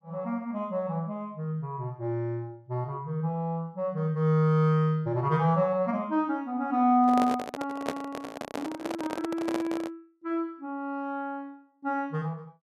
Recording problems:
microphone handling noise; from 7 to 10 s; peak +2 dB vs average level

